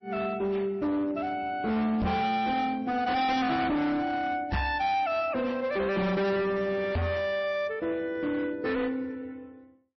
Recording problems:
lossy codec; MP3, then AAC, log-spectral distance 2 dB, nothing above 5.7 kHz
distortion; hard clipping, signal-to-distortion ratio 7 dB
knock on the microphone; at 2 s, at 4.5 s and at 7 s; peak +3 dB vs average level

